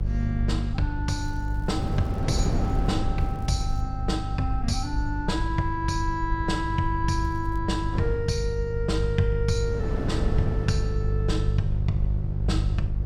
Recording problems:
mains hum; 50 Hz, harmonics up to 400 Hz, SNR 1 dB
rumble; below 66 Hz, SNR 5 dB
wind on the microphone; below 320 Hz, SNR 6 dB
crackle; from 1 to 3 s, at 3 s and at 7 s; loose cable, SNR 30 dB

